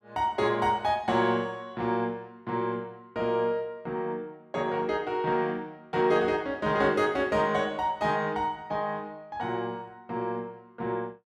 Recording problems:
none

